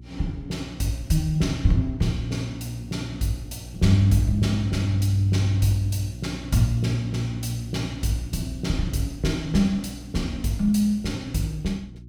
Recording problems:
hum; 60 Hz, harmonics up to 360 Hz, SNR 15 dB

